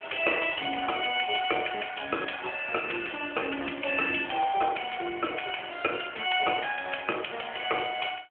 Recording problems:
phone line; 280 Hz to 3.2 kHz, AMR-NB

